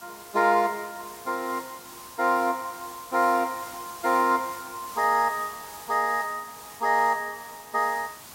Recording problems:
hiss; SNR 16 dB

